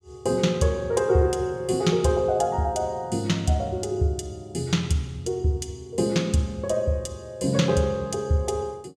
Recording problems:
none

